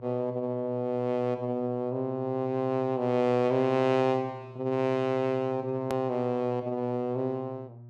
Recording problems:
hum; 60 Hz, harmonics up to 720 Hz, SNR 18 dB
hard cut with a click; at 6 s

